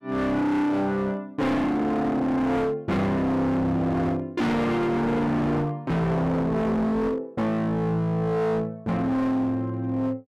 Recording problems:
distorted audio; hard clipping, signal-to-distortion ratio 7 dB

